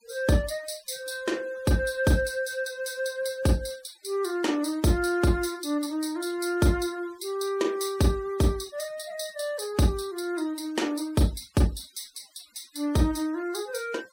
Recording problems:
denoising artefacts; signal-to-artefact ratio 23 dB

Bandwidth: 16 kHz